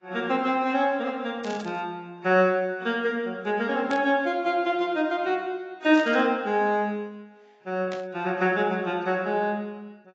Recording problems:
lossy codec; AAC, log-spectral distance 2 dB
burst of static; 4 times, first at 1.5 s; peak -8 dB vs average level

